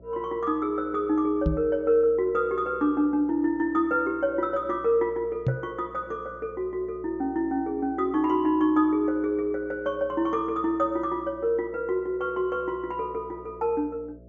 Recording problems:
treble cut off; nothing above 7 kHz
mains hum; 60 Hz, harmonics up to 660 Hz, SNR 24 dB
microphone bump; at 1.5 s and at 5.5 s; peak +4 dB vs average level

